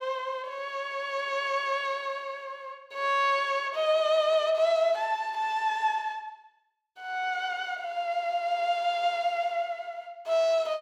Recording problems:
none

